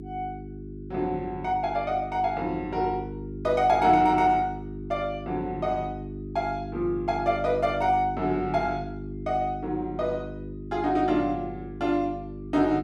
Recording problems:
hum; 50 Hz, harmonics up to 400 Hz, SNR 10 dB

